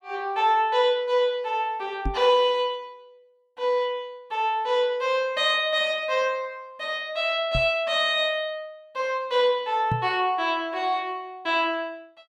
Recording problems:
microphone bump; at 2 s, at 7.5 s and at 10 s; peak 0 dB vs average level

